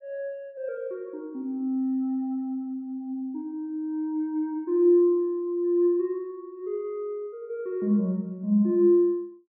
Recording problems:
none

